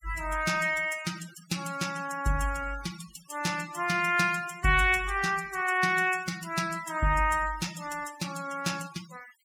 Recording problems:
denoising artefacts; signal-to-artefact ratio 15 dB

